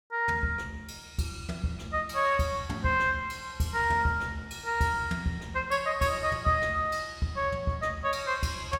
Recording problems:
none

